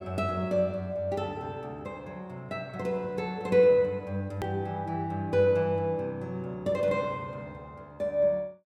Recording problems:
hard cut with a click; at 4.5 s

